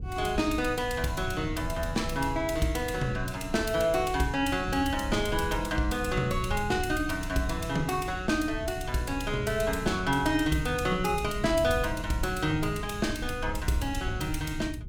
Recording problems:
low-frequency rumble; below 110 Hz, SNR 9 dB

